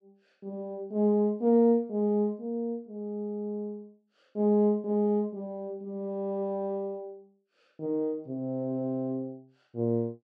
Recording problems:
none

